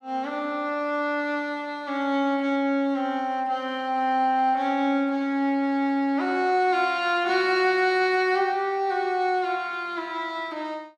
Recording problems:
none

